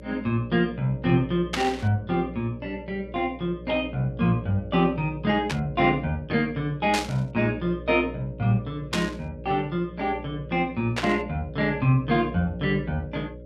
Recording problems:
hum; 60 Hz, harmonics up to 600 Hz, SNR 14 dB
static burst; 5 times, first at 1.5 s; peak +2 dB vs average level

